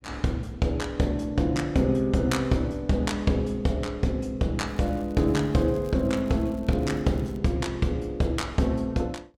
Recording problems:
crackle; from 4.5 to 7.5 s; loose cable, SNR 30 dB

